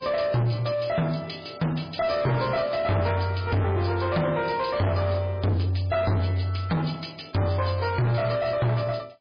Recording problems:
lossy codec; MP3, log-spectral distance 6 dB, nothing above 5 kHz
distortion; soft clipping, signal-to-distortion ratio 7 dB

